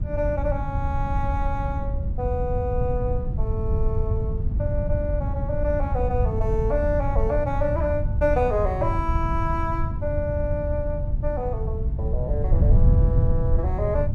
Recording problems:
wind on the microphone; below 100 Hz, SNR -2 dB

